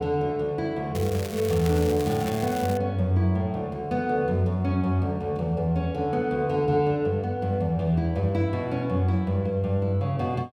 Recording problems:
crackling; from 1 to 3 s; loose cable, SNR 14 dB

